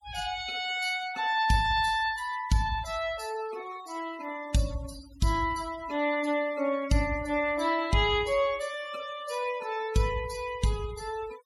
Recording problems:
noise reduction artefacts; signal-to-artefact ratio 17 dB

